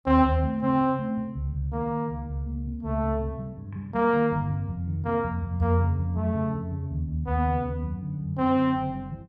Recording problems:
none

